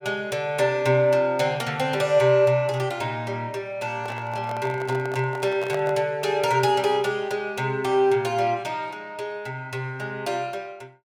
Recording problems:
handling noise; from 4 to 6 s; peak -3 dB vs average level

